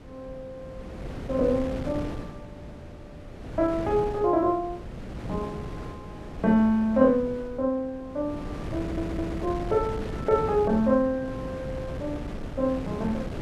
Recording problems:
wind on the microphone; below 410 Hz, SNR 10 dB
stutter; at 9 s

